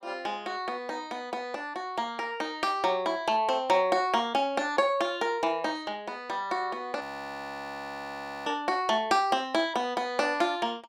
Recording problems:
audio freezing; at 7 s for 1.5 s

